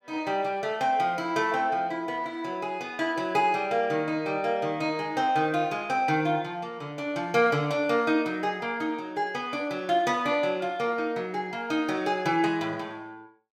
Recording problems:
none

